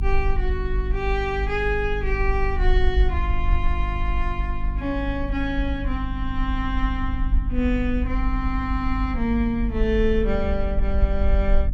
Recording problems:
hum; 50 Hz, harmonics up to 300 Hz, SNR 7 dB
rumble; below 52 Hz, SNR 1 dB

